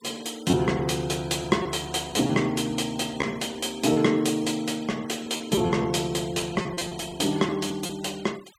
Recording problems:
noise reduction artefacts; signal-to-artefact ratio 21 dB
packet loss; 7% of the sound replaced, filled with repeated pitch periods

